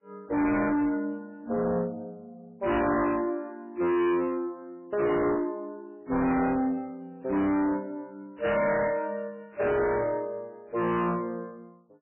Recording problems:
lossy codec; MP3, log-spectral distance 2 dB, nothing above 2.9 kHz
distortion; hard clipping, signal-to-distortion ratio 6 dB

